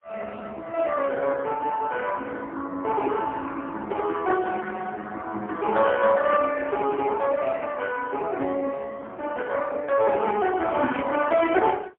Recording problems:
telephone audio; 240 Hz to 3 kHz, AMR-NB, then MP3

